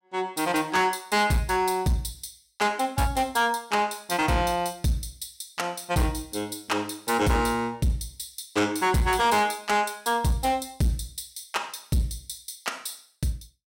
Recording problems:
distorted audio; hard clipping, signal-to-distortion ratio 11 dB

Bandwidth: 16.5 kHz